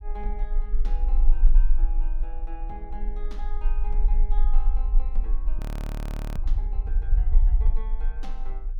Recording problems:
low-frequency rumble; below 36 Hz, strongest tone 22 Hz, SNR -17 dB
frozen audio; at 5.5 s for 1 s

